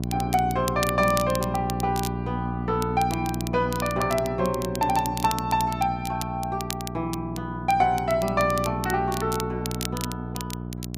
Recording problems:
hum; 60 Hz, harmonics up to 780 Hz, SNR 6 dB
crackling; vinyl, SNR 11 dB

